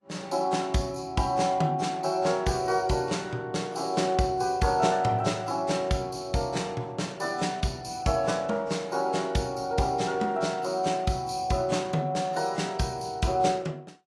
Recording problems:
lossy codec; AAC, log-spectral distance 3 dB, nothing above 11 kHz

